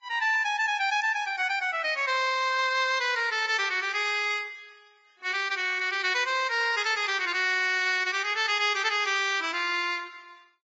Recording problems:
lossy compression; Vorbis, then AAC, log-spectral distance 4 dB

